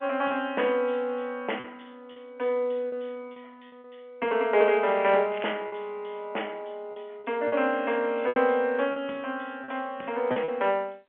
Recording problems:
phone line; 340 Hz to 3.2 kHz, G.711
lost packets; 6% of the sound replaced, filled with repeated pitch periods
crackle; at 5.5 s; loose cable, SNR 16 dB

